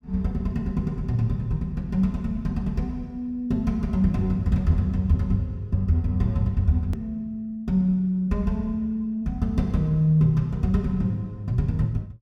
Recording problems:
click at an edit; at 7 s

